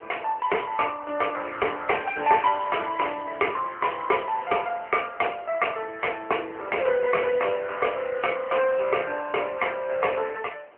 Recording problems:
telephone audio; 300 Hz to 3.1 kHz, AMR-NB
wind on the microphone; below 1.6 kHz, SNR 23 dB

